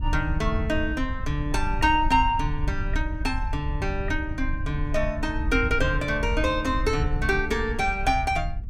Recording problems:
wind on the microphone; below 74 Hz, SNR 5 dB

